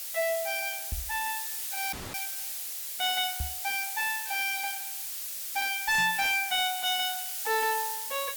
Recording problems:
distorted audio; hard clipping, signal-to-distortion ratio 11 dB
background hiss; SNR 4 dB
microphone bump; at 1 s, at 3.5 s and at 6 s; peak -1 dB vs average level
audio cutting out; at 2 s

